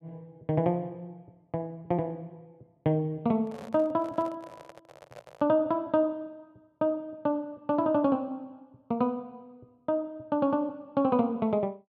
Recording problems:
microphone handling noise; from 3.5 to 5.5 s; peak -13 dB vs average level

